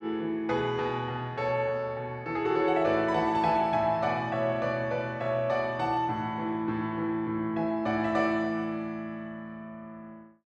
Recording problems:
none

